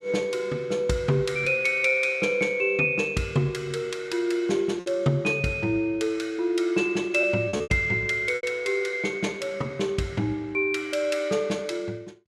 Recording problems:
packet loss; 3% of the sound replaced, filled with repeated pitch periods

